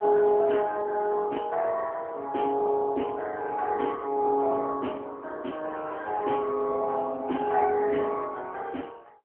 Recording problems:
telephone audio; 220 Hz to 3.3 kHz, AMR-NB

